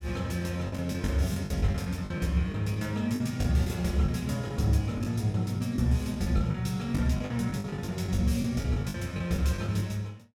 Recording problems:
packet loss; 11% of the sound replaced, filled with the last packet

